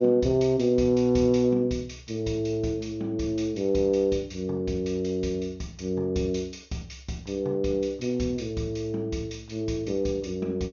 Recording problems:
treble missing; nothing above 6.7 kHz

